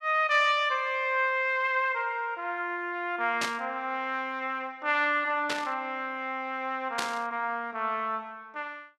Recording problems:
static burst; at 3.5 s, at 5.5 s and at 7 s; peak +1 dB vs average level

